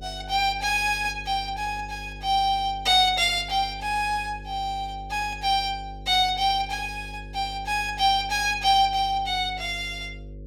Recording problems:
hum; 50 Hz, harmonics up to 550 Hz, SNR 17 dB

